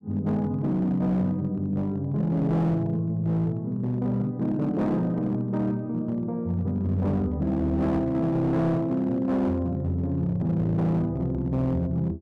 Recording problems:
distorted audio; hard clipping, signal-to-distortion ratio 12 dB

